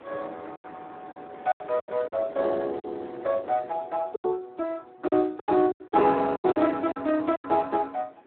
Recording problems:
telephone audio; 220 Hz to 2.5 kHz, Speex
wind on the microphone; below 980 Hz, SNR 23 dB
lost packets; 11% of the sound replaced, filled with silence

